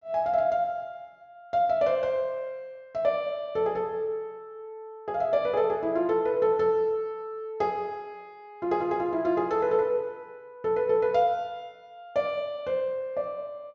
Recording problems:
treble cut off; nothing above 8 kHz

